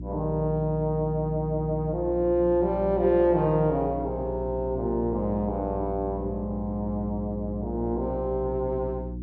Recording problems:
hum; 60 Hz, harmonics up to 360 Hz, SNR 9 dB

